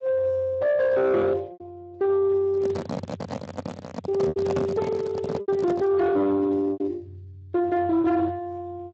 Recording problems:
lossy compression; Speex, log-spectral distance 3 dB
distortion; soft clipping, signal-to-distortion ratio 11 dB
lost packets; 4% of the sound replaced, filled with repeated pitch periods
microphone handling noise; from 2.5 to 6 s; peak 0 dB vs average level

